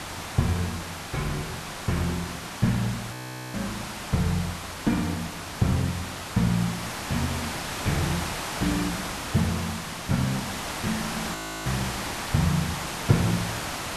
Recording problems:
background hiss; SNR 4 dB
frozen audio; at 3 s and at 11 s

